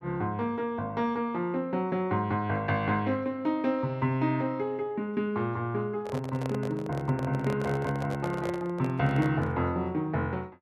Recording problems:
handling noise; from 6 to 9.5 s; peak -3 dB vs average level

